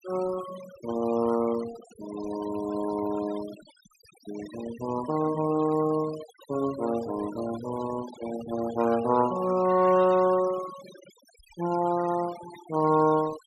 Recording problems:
denoising artefacts; signal-to-artefact ratio 16 dB

